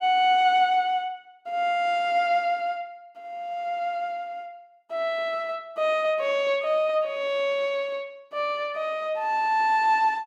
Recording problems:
none

